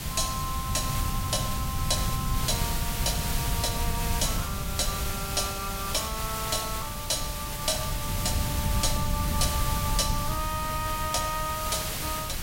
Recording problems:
hiss; slope -1 dB per octave, SNR 2 dB
low-frequency rumble; below 140 Hz, SNR 2 dB

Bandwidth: 16 kHz